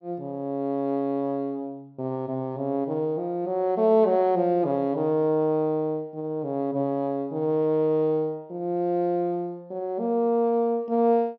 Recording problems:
treble missing; nothing above 6.1 kHz

